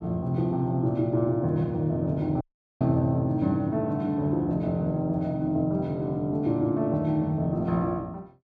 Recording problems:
audio cutting out; at 2.5 s

